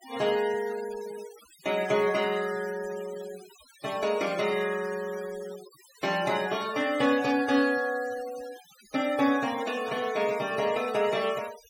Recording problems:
noise reduction artefacts; signal-to-artefact ratio 16 dB

